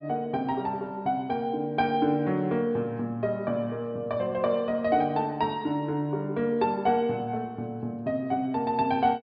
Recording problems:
treble missing; nothing above 5.5 kHz

